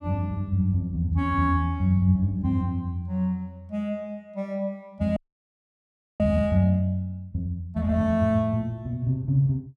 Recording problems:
audio freezing; at 5 s for 1 s

